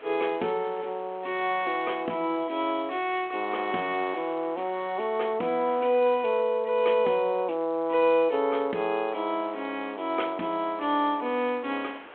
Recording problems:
phone line; 260 Hz to 3.4 kHz, G.726
wind noise; below 2.3 kHz, SNR 23 dB

